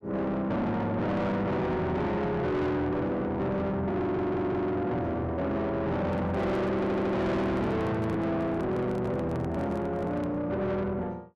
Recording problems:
distorted audio; soft clipping, signal-to-distortion ratio 6 dB
stutter; at 4 s and at 7 s
handling noise; from 6 to 10 s; peak -1 dB vs average level

